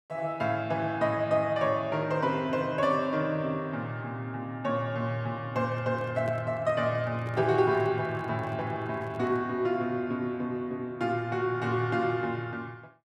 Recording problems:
microphone handling noise; from 5.5 to 9.5 s; peak -7 dB vs average level

